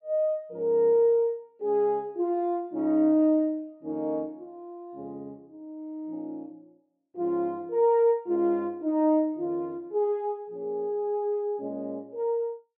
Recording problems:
none

